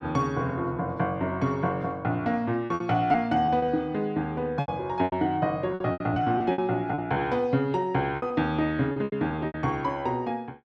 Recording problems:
packet loss; 10% of the sound replaced, filled with repeated pitch periods

